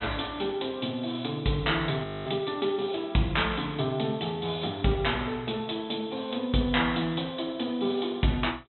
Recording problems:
treble cut off; nothing above 3.9 kHz
frozen audio; at 2 s

